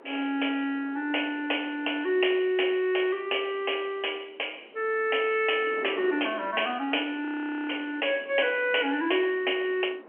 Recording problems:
telephone audio; 260 Hz to 3.2 kHz, G.711
wind on the microphone; below 730 Hz, SNR 20 dB
audio freezing; at 7.5 s

